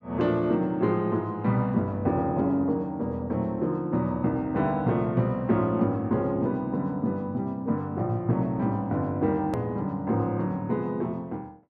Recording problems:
hard cut with a click; at 9.5 s

